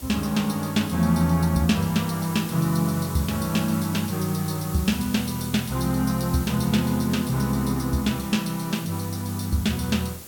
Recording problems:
hiss; SNR 13 dB

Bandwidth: 17 kHz